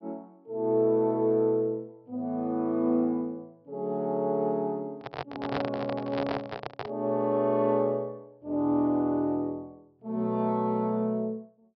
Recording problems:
treble missing; nothing above 5.5 kHz
handling noise; from 5 to 7 s; peak 0 dB vs average level

